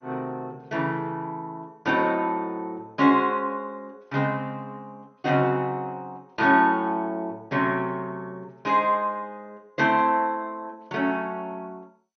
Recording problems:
codec artefacts; MP2, log-spectral distance 2 dB, nothing above 6.3 kHz

